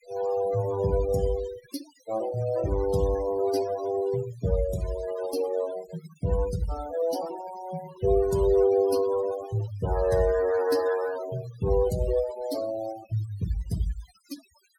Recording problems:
noise reduction artefacts; signal-to-artefact ratio 15 dB

